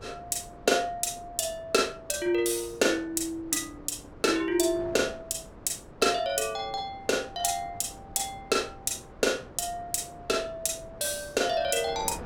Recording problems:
wind noise; below 620 Hz, SNR 19 dB

